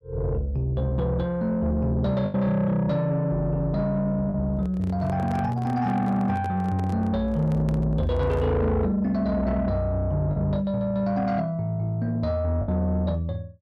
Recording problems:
distorted audio; soft clipping, signal-to-distortion ratio 11 dB
packet loss; 1.6% of the sound replaced, filled with the last packet
microphone handling noise; from 4.5 to 8.5 s; peak -8 dB vs average level

